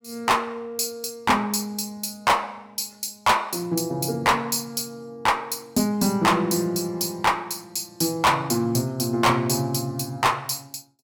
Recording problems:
distortion; hard clipping, uneven, signal-to-distortion ratio 8 dB

